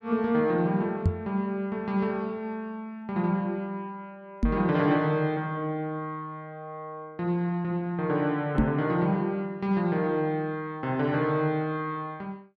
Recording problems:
microphone thump; at 1 s, at 4.5 s and at 8.5 s; peak +8 dB vs average level

